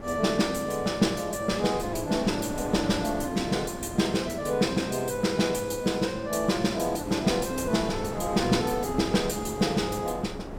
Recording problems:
wind noise; below 630 Hz, SNR 12 dB

